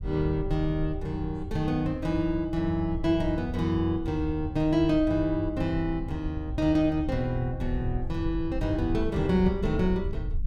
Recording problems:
low-frequency rumble; below 80 Hz, SNR 9 dB

